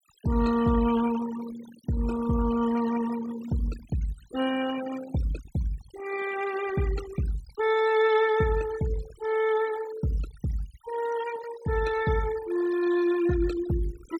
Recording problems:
denoising artefacts; signal-to-artefact ratio 13 dB

